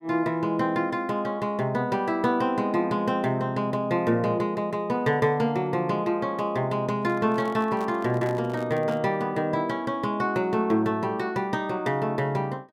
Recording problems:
handling noise; from 7 to 9 s; peak -9 dB vs average level

